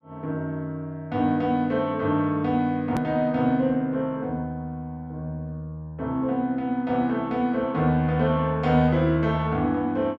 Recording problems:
edit click; at 3 s

